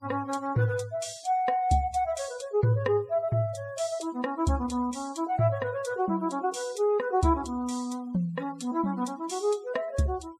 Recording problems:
noise reduction artefacts; signal-to-artefact ratio 24 dB

